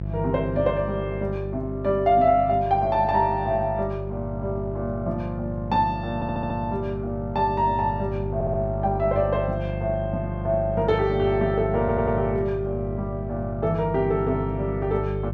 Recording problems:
electrical hum; 50 Hz, harmonics up to 550 Hz, SNR 7 dB
stutter; at 6 s, at 8.5 s and at 12 s

